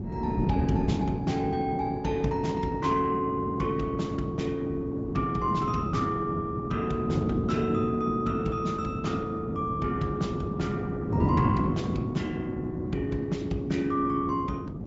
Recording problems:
treble missing; nothing above 7.6 kHz
lossy codec; Opus, log-spectral distance 2 dB
wind noise; below 280 Hz, SNR 2 dB

